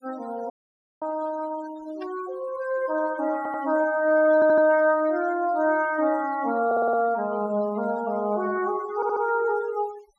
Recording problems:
denoising artefacts; signal-to-artefact ratio 19 dB
audio cutting out; at 0.5 s for 0.5 s
static burst; at 2 s; peak -17 dB vs average level
audio stuttering; 4 times, first at 3.5 s

